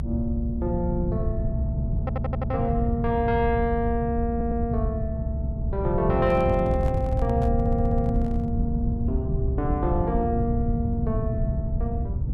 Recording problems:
rumble; below 130 Hz, SNR 0 dB
stutter; at 2 s, at 4.5 s and at 7.5 s
microphone handling noise; from 6 to 8.5 s; peak -10 dB vs average level

